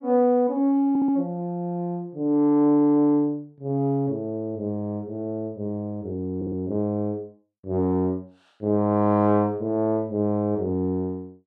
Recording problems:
stutter; at 1 s and at 6.5 s

